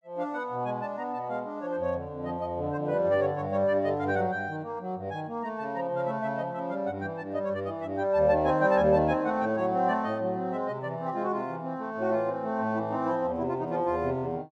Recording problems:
none

